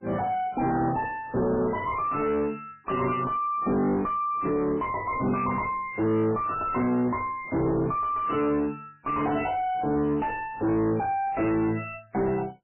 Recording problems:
codec artefacts; MP3, log-spectral distance 3 dB, nothing above 2.7 kHz
distortion; soft clipping, signal-to-distortion ratio 5 dB

